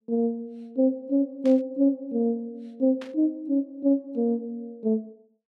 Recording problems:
static burst; at 1.5 s and at 3 s; peak -13 dB vs average level

